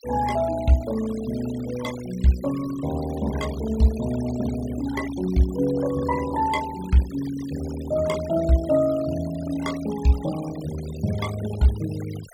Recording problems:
denoising artefacts; signal-to-artefact ratio 16 dB

